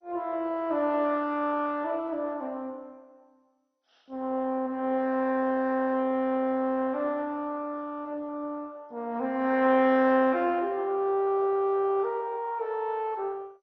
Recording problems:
lossy codec; MP2, log-spectral distance 3 dB, nothing above 5.5 kHz

